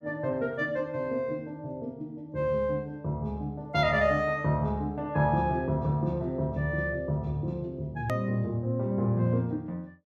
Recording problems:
hard cut with a click; at 8 s

